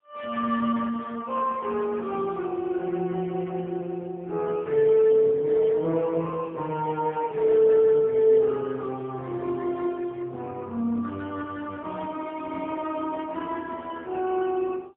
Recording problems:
phone line; 170 Hz to 3.5 kHz, AMR-NB, then MP3

